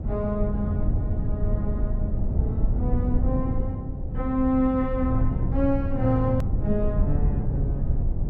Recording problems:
rumble; below 110 Hz, SNR 0 dB
edit click; at 6.5 s

